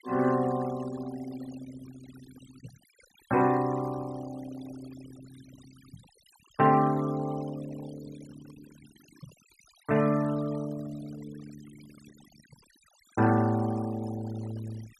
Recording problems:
denoising artefacts; signal-to-artefact ratio 21 dB

